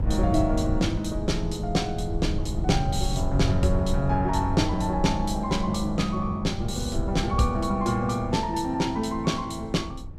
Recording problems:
wind on the microphone; below 98 Hz, SNR 6 dB

